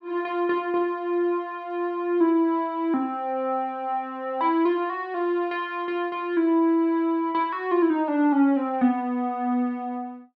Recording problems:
none

